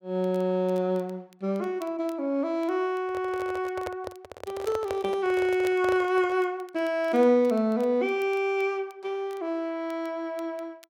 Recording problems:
crackle; vinyl, SNR 29 dB
handling noise; from 3 to 6.5 s; peak -3 dB vs average level

